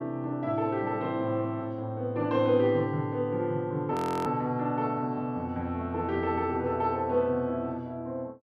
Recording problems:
frozen audio; at 4 s

